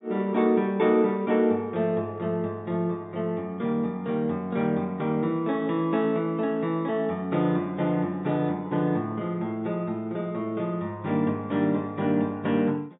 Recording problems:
treble missing; nothing above 4 kHz

